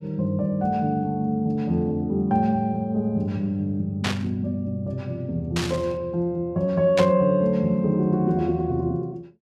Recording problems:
burst of static; at 4 s, at 5.5 s and at 7 s; peak +1 dB vs average level

